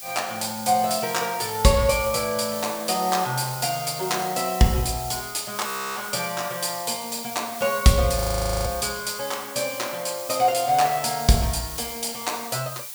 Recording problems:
hiss; slope +3 dB per octave, SNR 10 dB
frozen audio; at 5.5 s and at 8 s

